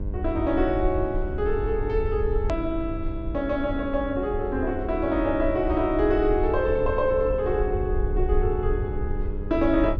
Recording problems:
treble missing; nothing above 8 kHz
hum; 50 Hz, harmonics up to 1.5 kHz, SNR 14 dB
rumble; below 70 Hz, SNR 6 dB
click at an edit; at 2.5 s

